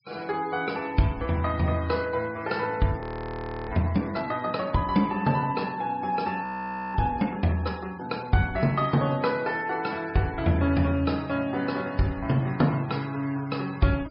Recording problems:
treble cut off; nothing above 5.5 kHz
denoising artefacts; signal-to-artefact ratio 23 dB
audio freezing; at 3 s for 0.5 s and at 6.5 s for 0.5 s

